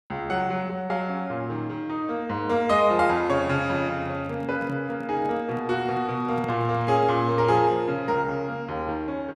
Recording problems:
microphone handling noise; from 4 to 7.5 s; peak -7 dB vs average level

